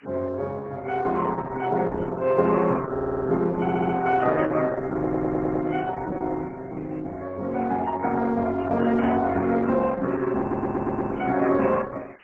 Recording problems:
lossy compression; MP3, then Opus, log-spectral distance 17 dB
background hiss; SNR 28 dB
audio stuttering; 4 times, first at 3 s

